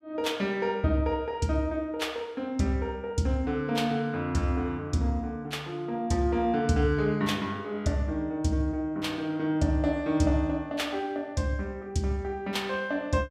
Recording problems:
none

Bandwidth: 15.5 kHz